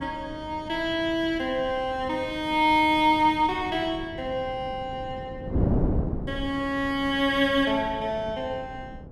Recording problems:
wind on the microphone; below 300 Hz, SNR 10 dB

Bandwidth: 15.5 kHz